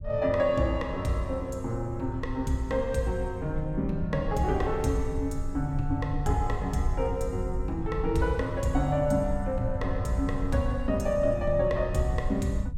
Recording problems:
rumble; below 88 Hz, SNR 7 dB

